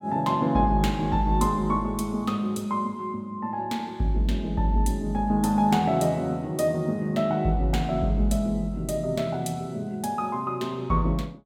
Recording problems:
none

